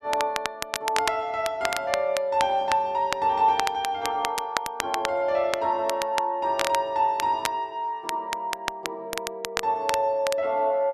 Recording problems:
crackle; vinyl, SNR 7 dB

